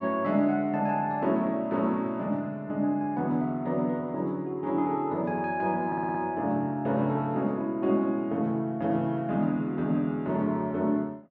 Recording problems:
stutter; at 6 s

